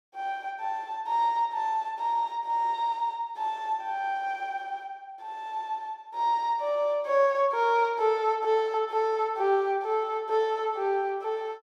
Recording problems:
none

